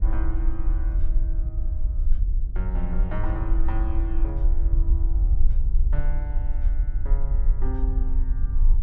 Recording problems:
low-frequency rumble; below 48 Hz, SNR -11 dB

